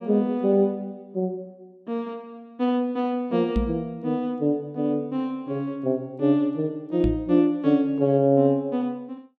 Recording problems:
microphone thump; at 3.5 s and at 7 s; peak +2 dB vs average level

